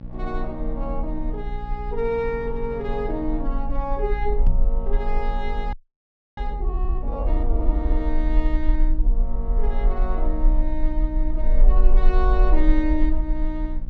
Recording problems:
mains hum; 60 Hz, harmonics up to 840 Hz, SNR 10 dB
rumble; below 40 Hz, strongest tone 22 Hz, SNR -4 dB
microphone thump; at 4.5 s; peak +6 dB vs average level
frozen audio; at 5.5 s for 0.5 s

